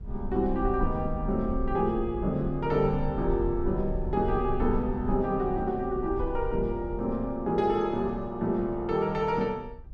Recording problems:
rumble; below 60 Hz, SNR 10 dB

